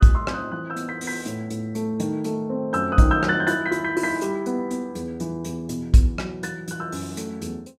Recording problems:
none

